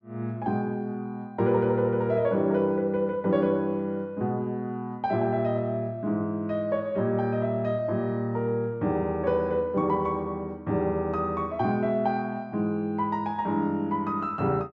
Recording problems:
none

